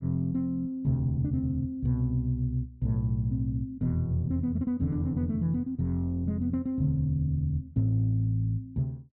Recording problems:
none

